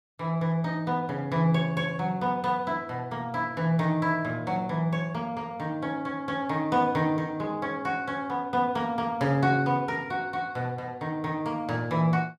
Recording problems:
none

